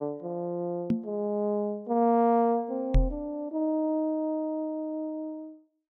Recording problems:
microphone bump; at 1 s and at 3 s; peak +7 dB vs average level

